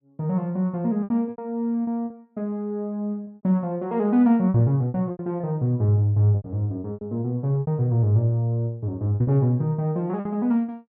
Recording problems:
lost packets; 9% of the sound replaced, filled with repeated pitch periods

